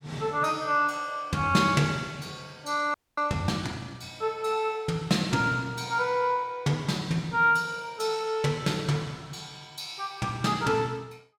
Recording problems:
audio freezing; at 3 s

